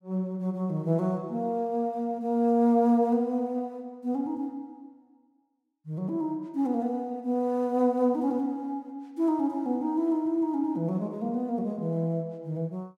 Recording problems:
none

